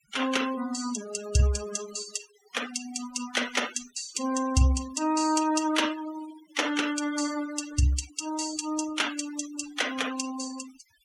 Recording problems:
denoising artefacts; signal-to-artefact ratio 12 dB

